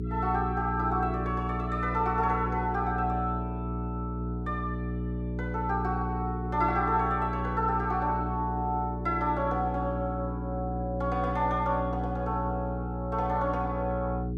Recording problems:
electrical hum; 60 Hz, harmonics up to 420 Hz, SNR 3 dB

